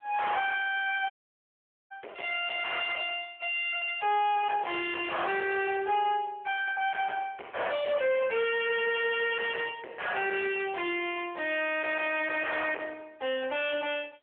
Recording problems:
phone line; 320 Hz to 3.4 kHz, AMR-NB
distorted audio; soft clipping, signal-to-distortion ratio 6 dB
audio cutting out; at 1 s for 1 s

